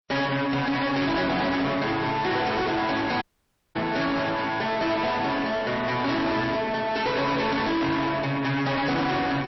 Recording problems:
lossy codec; MP3, log-spectral distance 4 dB, nothing above 5.7 kHz
distortion; soft clipping, signal-to-distortion ratio 6 dB
dropout; at 3 s for 0.5 s

